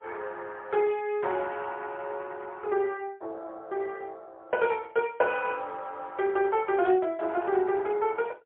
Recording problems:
telephone audio; 320 Hz to 3.3 kHz, AMR-NB, then MP3

